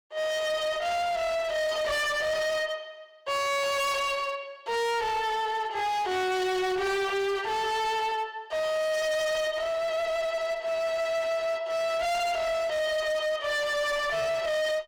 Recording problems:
distorted audio; hard clipping, uneven, signal-to-distortion ratio 6 dB

